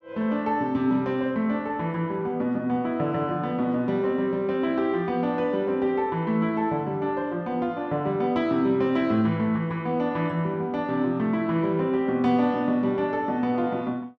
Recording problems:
none

